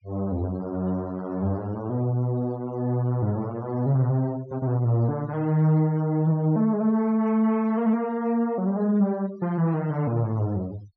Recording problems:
low-pass filter; nothing above 6.3 kHz
noise reduction artefacts; signal-to-artefact ratio 23 dB

